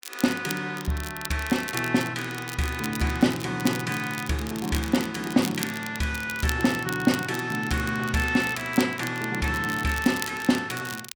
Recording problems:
crackling; vinyl, SNR 12 dB

